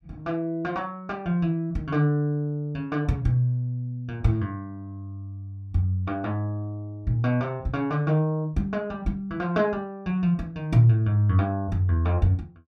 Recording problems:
none

